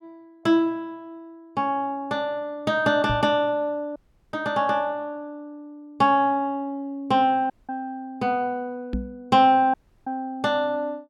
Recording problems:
microphone bump; at 3 s and at 9 s; peak -1 dB vs average level
dropout; at 4 s, at 7.5 s and at 9.5 s

